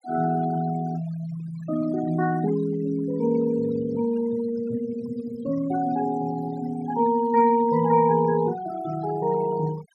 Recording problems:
denoising artefacts; signal-to-artefact ratio 17 dB

